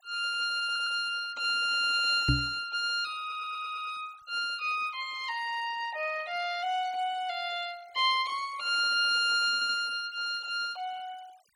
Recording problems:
denoising artefacts; signal-to-artefact ratio 23 dB
audio stuttering; at 0.5 s, at 3 s and at 9.5 s
microphone thump; at 2.5 s; peak +6 dB vs average level

